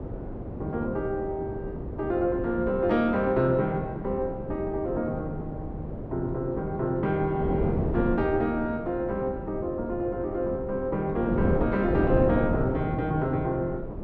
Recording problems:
wind on the microphone; below 390 Hz, SNR 5 dB

